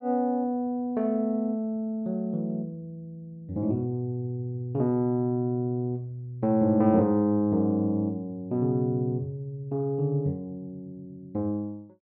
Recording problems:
none

